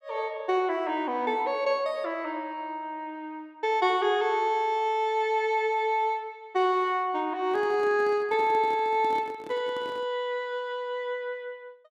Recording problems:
handling noise; from 7.5 to 10 s; peak -10 dB vs average level

